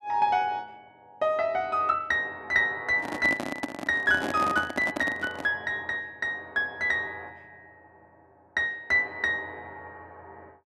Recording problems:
handling noise; from 3 to 5.5 s; peak 0 dB vs average level

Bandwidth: 12.5 kHz